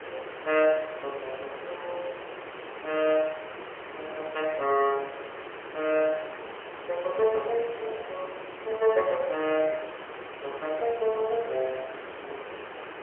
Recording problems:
telephone audio; 340 Hz to 3.1 kHz, AMR-NB, then MP3
background hiss; SNR 11 dB

